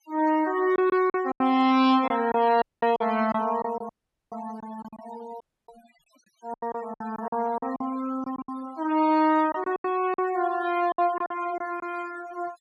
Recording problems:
denoising artefacts; signal-to-artefact ratio 19 dB
packet loss; 11% of the sound replaced, filled with silence
dropout; at 2.5 s, at 4 s and at 5.5 s

